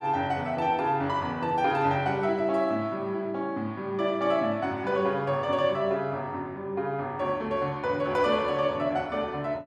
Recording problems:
none

